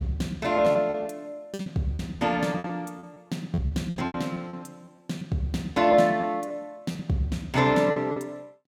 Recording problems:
packet loss; 11% of the sound replaced, filled with repeated pitch periods

